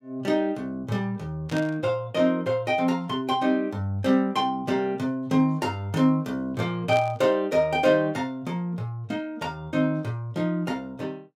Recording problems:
static burst; at 1.5 s and at 7 s; peak -8 dB vs average level

